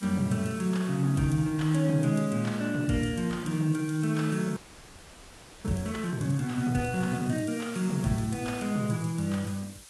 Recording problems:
lossy codec; AAC, log-spectral distance 7 dB
background hiss; slope +1 dB per octave, SNR 19 dB
frozen audio; at 4.5 s for 1 s

